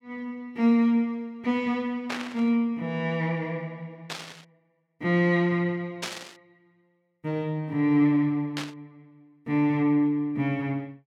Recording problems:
static burst; 4 times, first at 2 s; peak -2 dB vs average level

